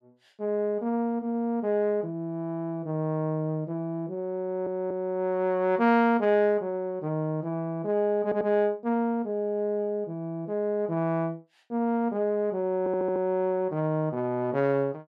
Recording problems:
audio stuttering; at 4.5 s, at 8 s and at 13 s

